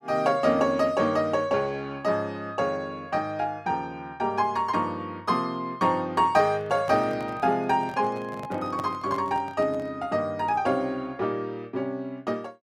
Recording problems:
microphone handling noise; from 6.5 to 10 s; peak -5 dB vs average level

